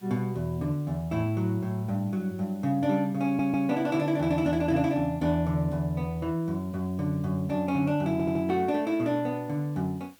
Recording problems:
background hiss; slope -1 dB per octave, SNR 29 dB
stutter; at 3.5 s and at 8 s

